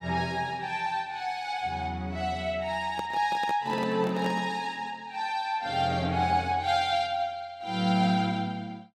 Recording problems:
microphone handling noise; from 3 to 4.5 s; peak -4 dB vs average level

